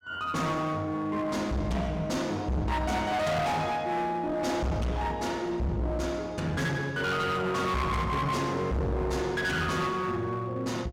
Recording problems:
distortion; hard clipping, uneven, signal-to-distortion ratio 6 dB

